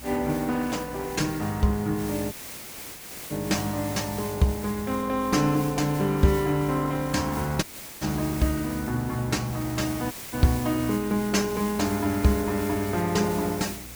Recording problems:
lossy codec; Opus, log-spectral distance 3 dB
electrical hum; 60 Hz, harmonics up to 360 Hz, SNR 20 dB
background hiss; slope -2 dB per octave, SNR 12 dB
dropout; at 2.5 s for 1 s, at 7.5 s and at 10 s

